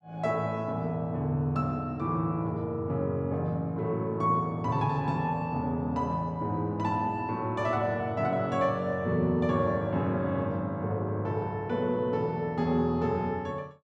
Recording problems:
none

